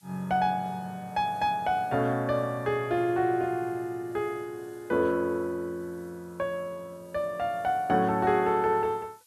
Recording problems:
background hiss; slope +4 dB per octave, SNR 30 dB

